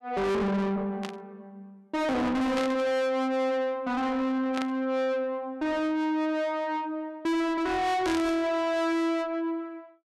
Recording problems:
distorted audio; soft clipping, signal-to-distortion ratio 6 dB
static burst; 4 times, first at 1 s; peak -3 dB vs average level

